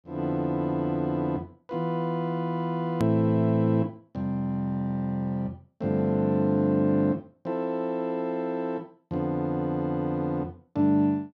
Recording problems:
click at an edit; at 3 s

